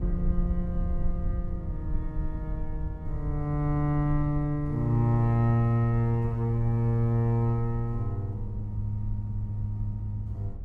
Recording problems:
rumble; below 76 Hz, SNR 8 dB

